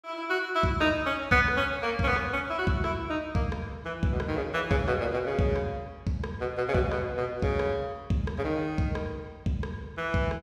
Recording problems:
none

